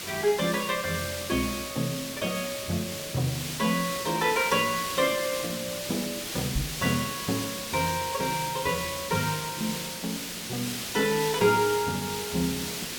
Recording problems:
hiss; SNR 4 dB
knock on the microphone; at 6.5 s; peak +2 dB vs average level

